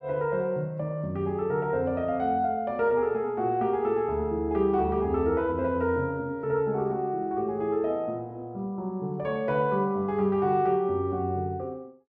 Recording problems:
none

